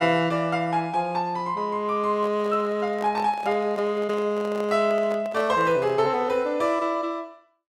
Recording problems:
handling noise; from 2 to 6 s; peak -8 dB vs average level

